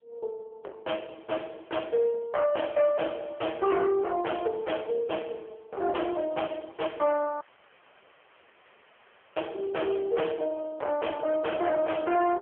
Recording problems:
telephone audio; 340 Hz to 3.3 kHz, AMR-NB
distorted audio; hard clipping, signal-to-distortion ratio 7 dB
dropout; at 7.5 s for 2 s

